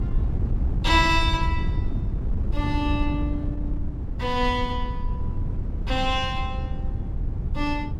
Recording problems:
wind on the microphone; below 100 Hz, SNR 2 dB

